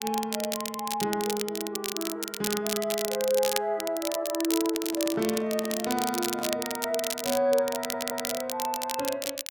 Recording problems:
crackle; vinyl, SNR 4 dB
microphone handling noise; from 4.5 to 6.5 s; peak -8 dB vs average level
audio stuttering; at 8 s

